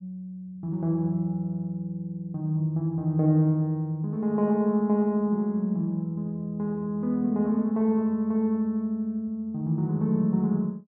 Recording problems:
none

